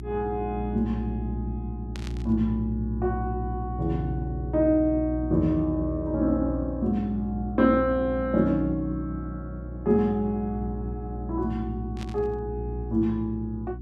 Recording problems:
hum; 60 Hz, harmonics up to 360 Hz, SNR 7 dB
static burst; at 2 s and at 12 s; peak -10 dB vs average level

